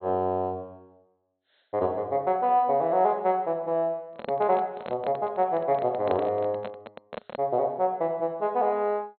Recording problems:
low-pass filter; nothing above 4.2 kHz
handling noise; from 4 to 7.5 s; peak -3 dB vs average level

